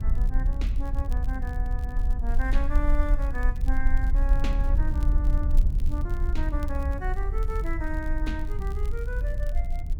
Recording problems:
low-frequency rumble; below 42 Hz, strongest tone 20 Hz, SNR -3 dB
wind on the microphone; below 62 Hz, SNR -7 dB
crackling; vinyl, SNR 21 dB

